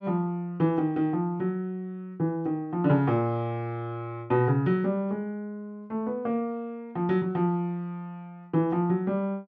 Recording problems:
none

